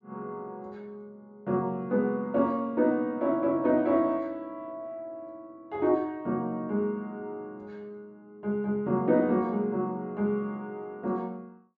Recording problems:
treble cut off; nothing above 8 kHz

